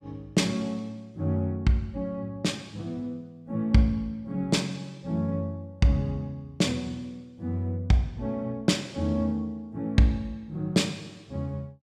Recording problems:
none

